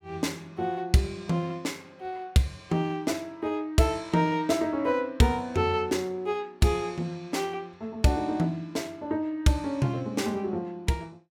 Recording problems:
none

